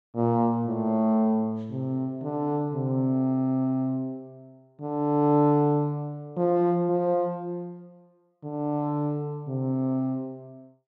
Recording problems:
none

